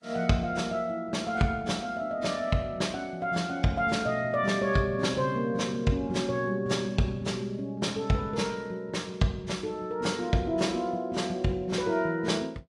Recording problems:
lossy codec; AAC, log-spectral distance 2 dB

